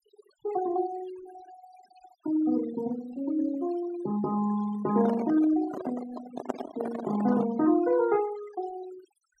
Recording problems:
denoising artefacts; signal-to-artefact ratio 15 dB
microphone handling noise; from 5 to 7.5 s; peak +1 dB vs average level

